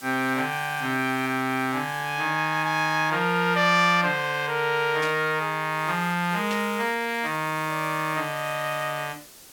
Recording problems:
background hiss; SNR 19 dB
burst of static; at 5 s and at 6.5 s; peak -5 dB vs average level

